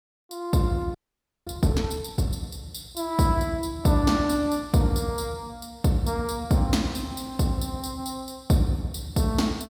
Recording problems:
frozen audio; at 1 s for 0.5 s

